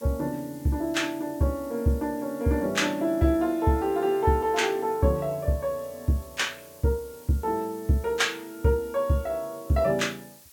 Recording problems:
hiss; slope +2 dB per octave, SNR 22 dB

